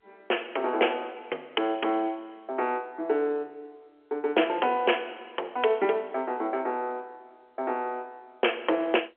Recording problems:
telephone audio; 340 Hz to 3.3 kHz, G.711

